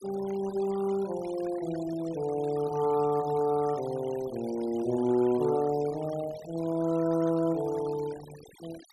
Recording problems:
noise reduction artefacts; signal-to-artefact ratio 19 dB

